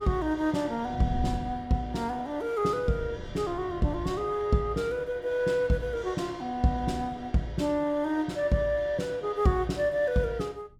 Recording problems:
wind noise; below 140 Hz, SNR 12 dB

